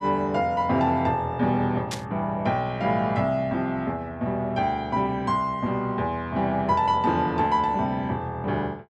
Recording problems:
burst of static; at 2 s; peak -3 dB vs average level

